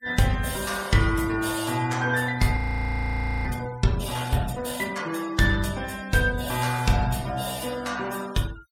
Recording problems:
noise reduction artefacts; signal-to-artefact ratio 17 dB
frozen audio; at 2.5 s for 1 s

